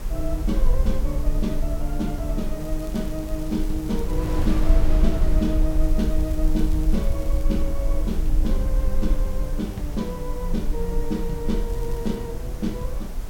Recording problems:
hiss; slope +3 dB per octave, SNR 18 dB
low-frequency rumble; below 46 Hz, SNR -1 dB
wind on the microphone; below 300 Hz, SNR 8 dB
crackle; from 2.5 to 4.5 s, from 6 to 7.5 s and at 12 s; loose cable, SNR 21 dB

